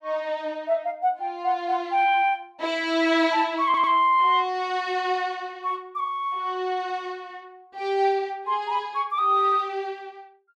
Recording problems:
stutter; at 3.5 s

